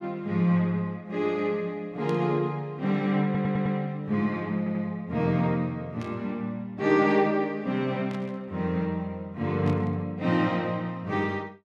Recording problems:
static burst; 4 times, first at 2 s; peak -13 dB vs average level
stutter; at 3.5 s and at 4.5 s

